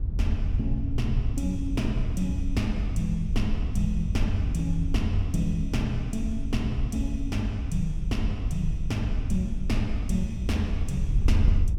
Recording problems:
wind noise; below 74 Hz, SNR 0 dB

